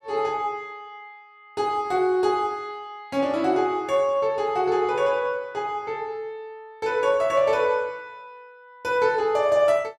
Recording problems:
none

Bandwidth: 14 kHz